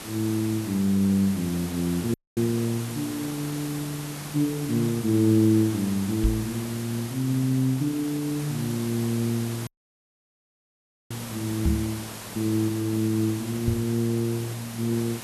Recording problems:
hiss; slope -3 dB per octave, SNR 11 dB
dropout; at 2 s and at 9.5 s for 1.5 s
microphone thump; at 6 s, at 12 s and at 14 s; peak +6 dB vs average level

